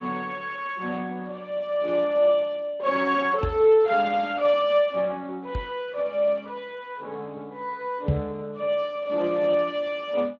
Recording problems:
codec artefacts; Speex, log-spectral distance 3 dB
knock on the microphone; at 3.5 s, at 5.5 s and at 8 s; peak +5 dB vs average level

